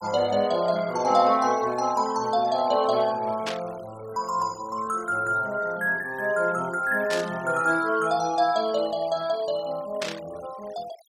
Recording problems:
noise reduction artefacts; signal-to-artefact ratio 22 dB
burst of static; at 3.5 s, at 7 s and at 10 s; peak -2 dB vs average level

